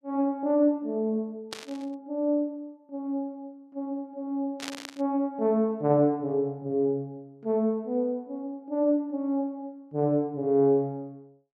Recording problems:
burst of static; at 1.5 s and at 4.5 s; peak -4 dB vs average level

